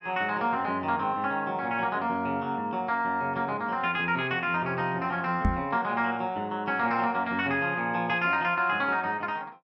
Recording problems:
knock on the microphone; at 5.5 s; peak +4 dB vs average level

